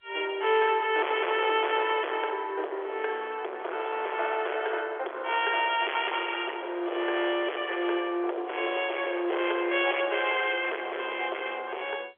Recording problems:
telephone audio; 320 Hz to 3.5 kHz, G.711
distorted audio; hard clipping, uneven, signal-to-distortion ratio 7 dB

